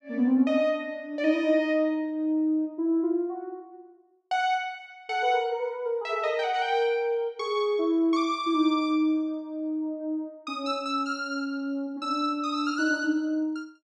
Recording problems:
none

